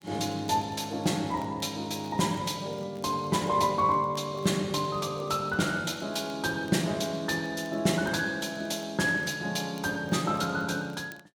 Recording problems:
crackling; vinyl, SNR 29 dB

